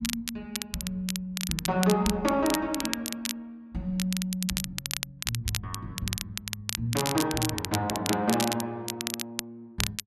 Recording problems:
crackling; vinyl, SNR 3 dB

